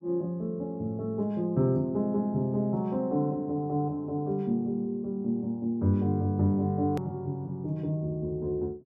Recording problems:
hard cut with a click; at 7 s

